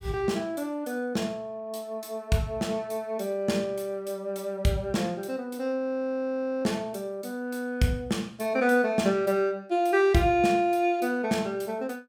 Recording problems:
audio freezing; at 6 s for 1 s

